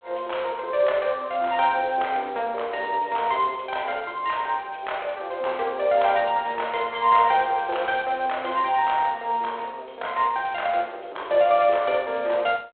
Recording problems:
phone line; 340 Hz to 3.7 kHz, G.726

